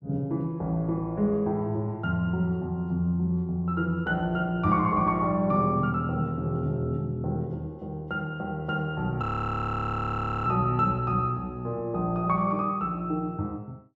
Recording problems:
frozen audio; at 9 s for 1 s

